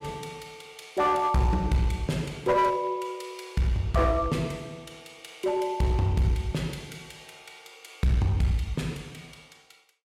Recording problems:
distortion; hard clipping, uneven, signal-to-distortion ratio 11 dB

